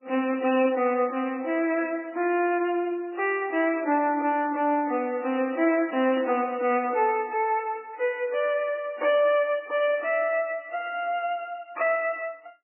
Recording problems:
lossy compression; MP3, log-spectral distance 3 dB, nothing above 2.9 kHz

